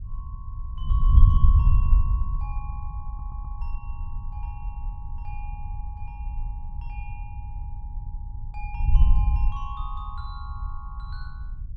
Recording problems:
wind on the microphone; below 68 Hz, SNR -15 dB
audio stuttering; at 3 s

